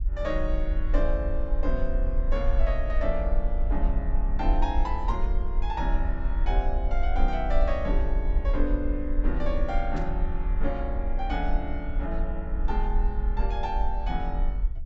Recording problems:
treble cut off; nothing above 7.7 kHz
low-frequency rumble; below 46 Hz, SNR -3 dB
static burst; at 10 s; peak -11 dB vs average level

